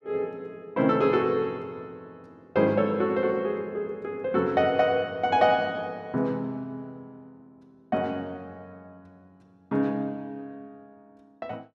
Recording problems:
none

